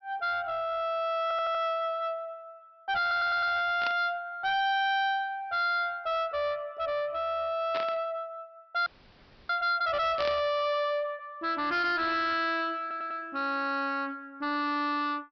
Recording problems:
treble cut off; nothing above 5.5 kHz
distortion; soft clipping, signal-to-distortion ratio 6 dB
stutter; at 1 s, at 3 s and at 13 s
static burst; at 4 s, at 7.5 s and at 10 s; peak -3 dB vs average level
frozen audio; at 9 s for 0.5 s

